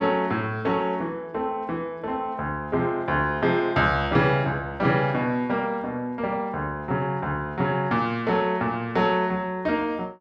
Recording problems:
none

